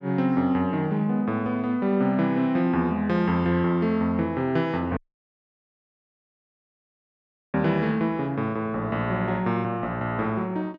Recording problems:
dropout; at 5 s for 2.5 s

